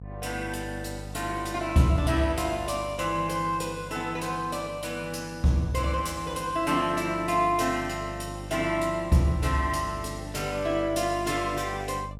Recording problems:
mains hum; 50 Hz, harmonics up to 700 Hz, SNR 14 dB

